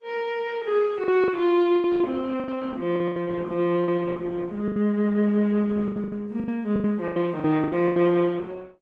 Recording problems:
lossy compression; Opus, then AAC, log-spectral distance 2 dB
packet loss; 13% of the sound replaced, filled with the last packet

